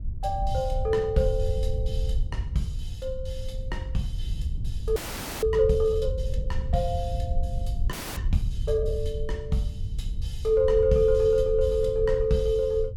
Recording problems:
rumble; below 80 Hz, SNR 6 dB
frozen audio; at 5 s and at 8 s

